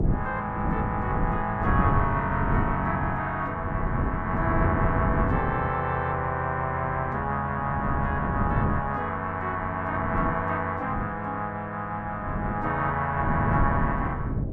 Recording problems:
wind noise; below 230 Hz, SNR 3 dB

